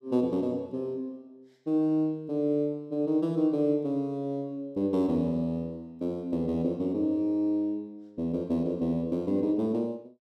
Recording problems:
none

